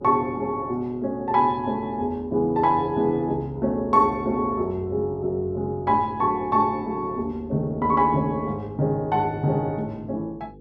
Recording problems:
hum; 50 Hz, harmonics up to 500 Hz, SNR 23 dB

